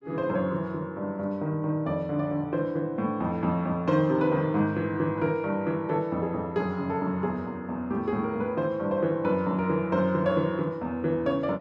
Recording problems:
none

